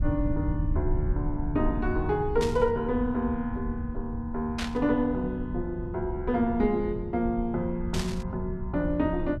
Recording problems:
low-frequency rumble; below 100 Hz, SNR 6 dB
static burst; at 2.5 s, at 4.5 s and at 8 s; peak -1 dB vs average level

